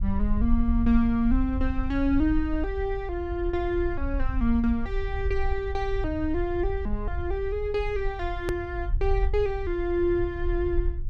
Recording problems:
rumble; below 58 Hz, SNR 5 dB
hard cut with a click; at 8.5 s

